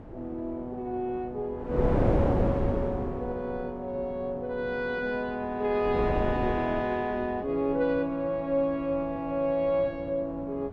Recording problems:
wind on the microphone; below 470 Hz, SNR 1 dB

